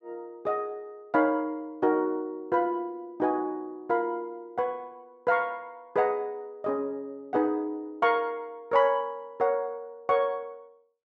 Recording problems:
none

